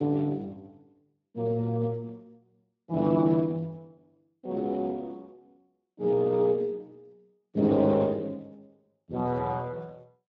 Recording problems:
lossy codec; Speex, log-spectral distance 2 dB

